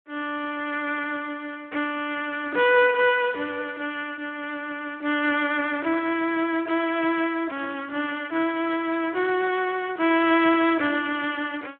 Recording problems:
phone line; 300 Hz to 3.6 kHz, Speex

